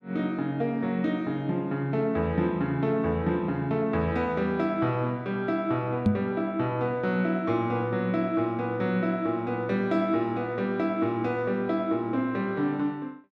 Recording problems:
microphone bump; at 6 s; peak +8 dB vs average level

